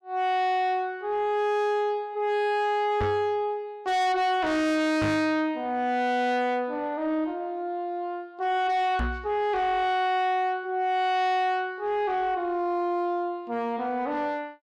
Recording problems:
distorted audio; soft clipping, signal-to-distortion ratio 8 dB
microphone thump; at 3 s, at 5 s and at 9 s; peak +1 dB vs average level

